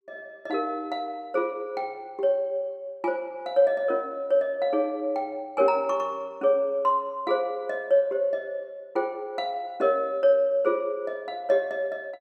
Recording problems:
none

